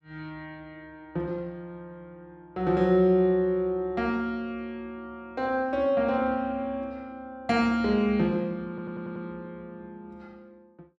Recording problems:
audio stuttering; at 8.5 s

